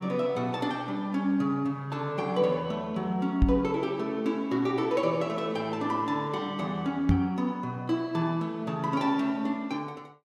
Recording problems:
microphone bump; at 3.5 s and at 7 s; peak +9 dB vs average level

